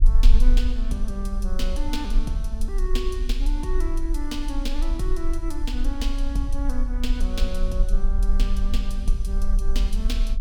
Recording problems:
rumble; below 38 Hz, strongest tone 26 Hz, SNR -6 dB

